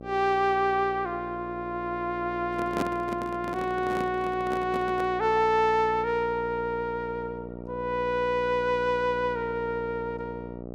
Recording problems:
hum; 60 Hz, harmonics up to 1.1 kHz, SNR 12 dB
microphone handling noise; from 2.5 to 5 s; peak +2 dB vs average level

